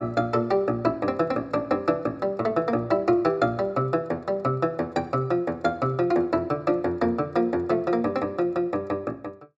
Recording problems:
none

